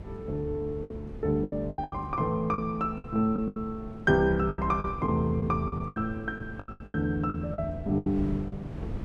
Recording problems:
hum; 50 Hz, harmonics up to 350 Hz, SNR 20 dB
wind on the microphone; below 210 Hz, SNR 14 dB
lost packets; 14% of the sound replaced, filled with the last packet

